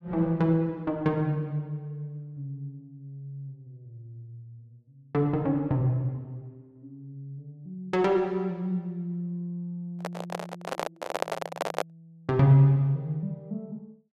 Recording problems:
handling noise; from 10 to 12 s; peak +3 dB vs average level

